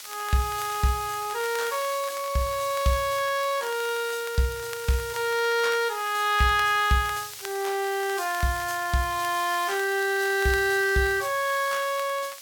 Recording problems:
hiss; slope +4 dB per octave, SNR 13 dB
crackle; vinyl, SNR 20 dB

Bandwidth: 17 kHz